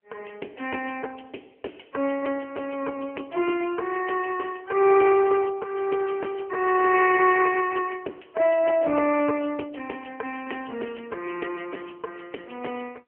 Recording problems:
telephone audio; 300 Hz to 3 kHz, AMR-NB

